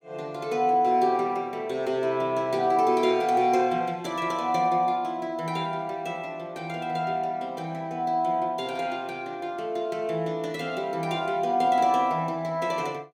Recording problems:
none

